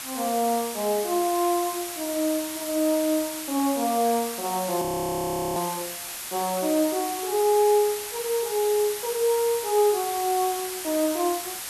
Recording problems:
background hiss; slope +1 dB per octave, SNR 7 dB
frozen audio; at 5 s for 0.5 s

